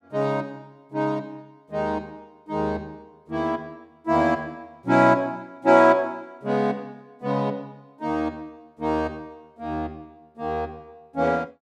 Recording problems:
none

